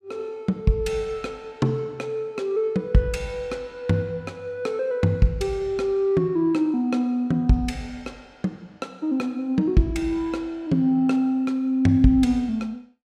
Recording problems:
none

